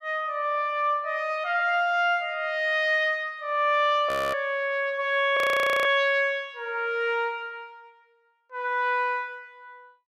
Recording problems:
audio freezing; at 4 s and at 5.5 s

